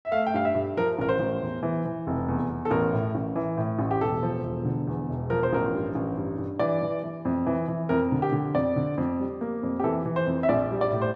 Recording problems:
none

